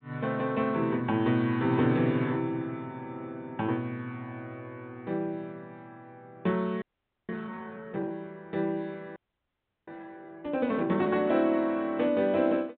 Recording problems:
treble missing; nothing above 4 kHz
frozen audio; at 7 s and at 9 s for 0.5 s

